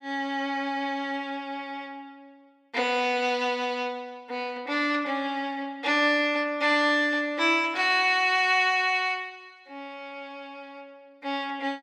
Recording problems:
none

